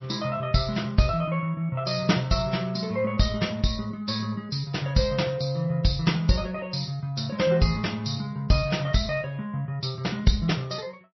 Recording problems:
lossy compression; MP3, log-spectral distance 5 dB, nothing above 5.7 kHz

